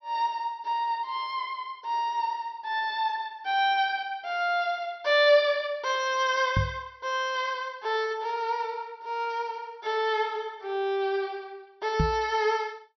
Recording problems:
low-pass filter; nothing above 6 kHz
microphone thump; at 6.5 s and at 12 s; peak +5 dB vs average level

